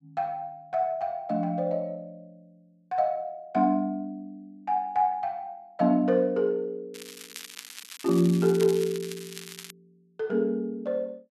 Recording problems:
crackle; from 7 to 9.5 s; loose cable, SNR 14 dB

